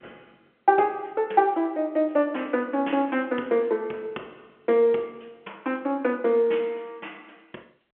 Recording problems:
telephone audio; 240 Hz to 3.3 kHz, G.711

